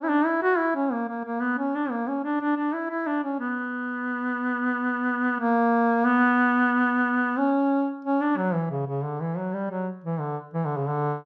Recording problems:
none

